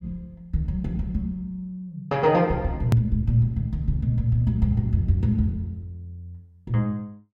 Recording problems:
click at an edit; at 3 s

